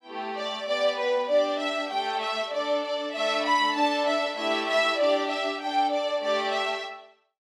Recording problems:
none

